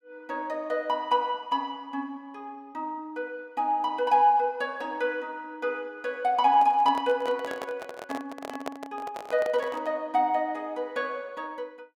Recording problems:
handling noise; from 6.5 to 10 s; peak -2 dB vs average level

